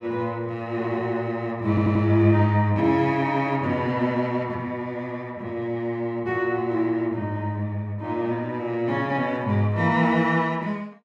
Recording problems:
stutter; at 1.5 s

